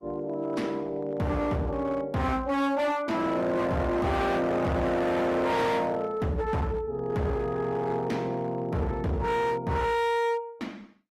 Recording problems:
lossy compression; Opus, log-spectral distance 2 dB, nothing above 15.1 kHz
distorted audio; hard clipping, signal-to-distortion ratio 7 dB

